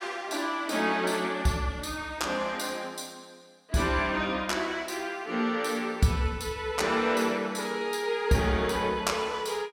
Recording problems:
none

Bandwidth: 16.5 kHz